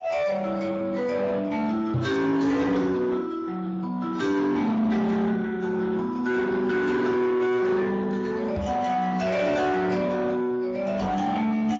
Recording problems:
codec artefacts; Speex, then AAC, log-spectral distance 3 dB
distorted audio; soft clipping, signal-to-distortion ratio 8 dB
microphone thump; at 2 s, at 8.5 s and at 11 s; peak +3 dB vs average level

